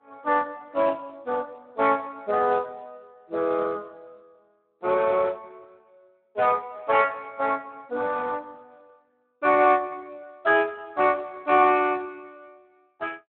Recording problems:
phone line; 300 Hz to 2.9 kHz, Speex

